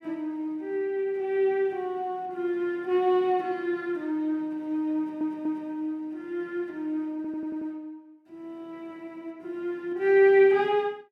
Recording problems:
stutter; at 5 s and at 7 s

